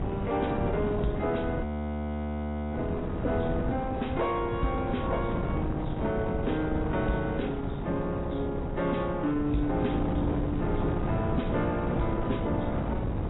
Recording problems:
codec artefacts; AAC, log-spectral distance 2 dB, nothing above 3.9 kHz
distortion; soft clipping, signal-to-distortion ratio 11 dB
wind noise; below 350 Hz, SNR 2 dB
audio freezing; at 1.5 s for 1 s

